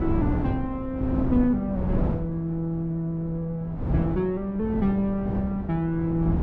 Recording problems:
wind on the microphone; below 250 Hz, SNR 3 dB

